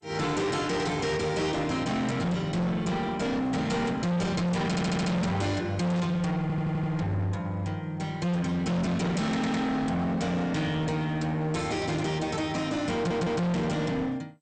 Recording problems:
lossy codec; MP2, log-spectral distance 2 dB, nothing above 8.5 kHz
distorted audio; hard clipping, uneven, signal-to-distortion ratio 6 dB
audio stuttering; 4 times, first at 4.5 s
static burst; at 6 s; peak -15 dB vs average level

